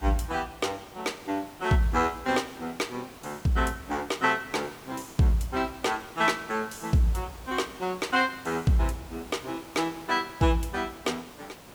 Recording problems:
hiss; slope -4 dB per octave, SNR 18 dB

